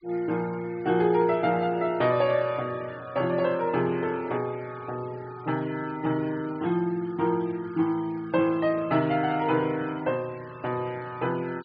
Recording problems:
low-pass filter; nothing above 4.9 kHz
noise reduction artefacts; signal-to-artefact ratio 22 dB

